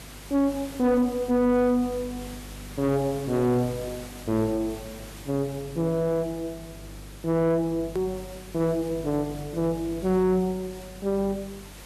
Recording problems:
distorted audio; soft clipping, signal-to-distortion ratio 7 dB
hum; 50 Hz, harmonics up to 600 Hz, SNR 19 dB
hiss; slope -3 dB per octave, SNR 18 dB
edit click; at 8 s

